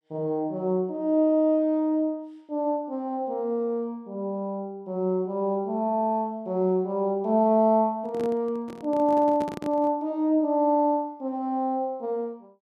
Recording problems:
microphone handling noise; from 8 to 10 s; peak -6 dB vs average level

